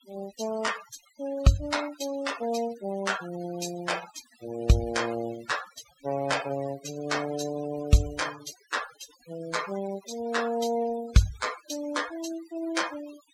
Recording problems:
denoising artefacts; signal-to-artefact ratio 14 dB

